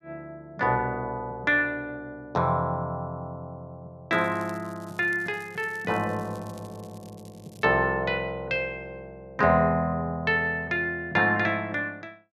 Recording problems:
crackle; from 4 to 7.5 s; loose cable, SNR 27 dB

